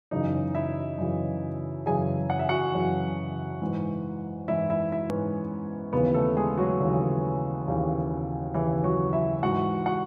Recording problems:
hard cut with a click; at 5 s

